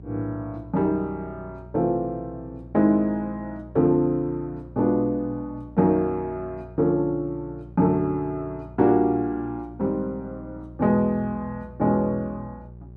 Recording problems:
hum; 60 Hz, harmonics up to 600 Hz, SNR 19 dB

